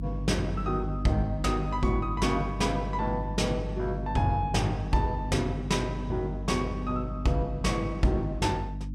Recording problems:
mains hum; 50 Hz, harmonics up to 300 Hz, SNR 6 dB

